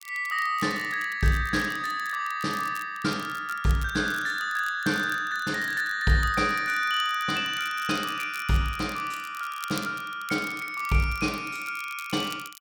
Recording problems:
crackle; vinyl, SNR 18 dB

